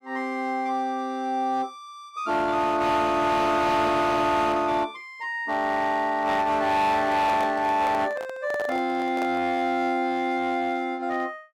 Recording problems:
distortion; hard clipping, signal-to-distortion ratio 10 dB
microphone handling noise; from 7 to 9.5 s; peak -5 dB vs average level

